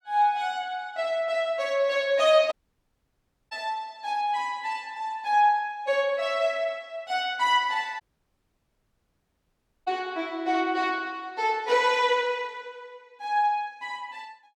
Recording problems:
audio cutting out; at 2.5 s for 1 s and at 8 s for 2 s

